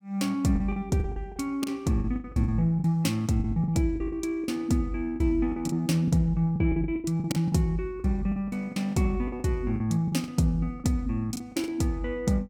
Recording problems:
packet loss; 14% of the sound replaced, filled with the last packet

